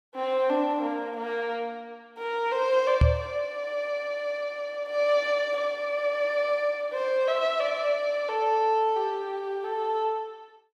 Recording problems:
microphone thump; at 3 s; peak +9 dB vs average level

